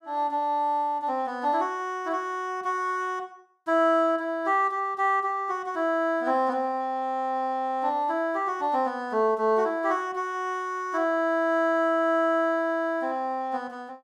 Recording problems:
none

